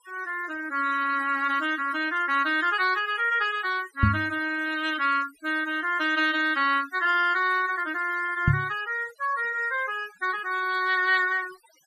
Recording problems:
denoising artefacts; signal-to-artefact ratio 18 dB
knock on the microphone; at 4 s and at 8.5 s; peak +7 dB vs average level

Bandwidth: 14.5 kHz